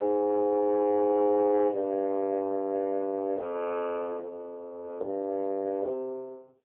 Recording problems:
phone line; 260 Hz to 2.9 kHz, AMR-NB

